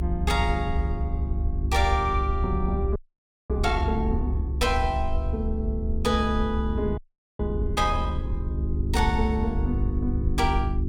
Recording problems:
electrical hum; 50 Hz, harmonics up to 400 Hz, SNR 6 dB
rumble; below 70 Hz, strongest tone 68 Hz, SNR 1 dB
audio freezing; at 3 s for 0.5 s and at 7 s

